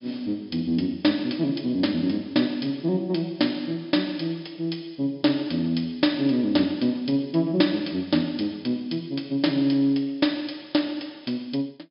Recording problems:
treble cut off; nothing above 5.5 kHz

